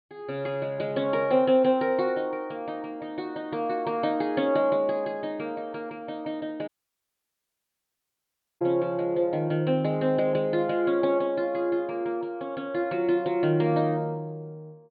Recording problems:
low-pass filter; nothing above 4.5 kHz
dropout; at 6.5 s for 2 s

